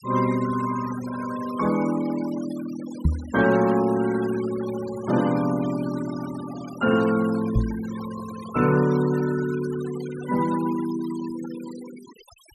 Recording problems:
denoising artefacts; signal-to-artefact ratio 15 dB
microphone thump; at 3 s and at 7.5 s; peak +7 dB vs average level

